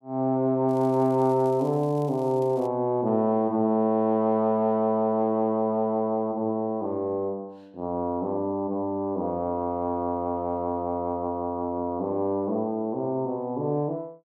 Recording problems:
crackling; from 0.5 to 2.5 s; loose cable, SNR 29 dB

